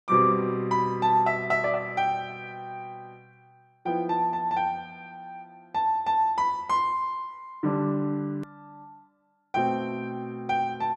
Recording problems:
edit click; at 8.5 s

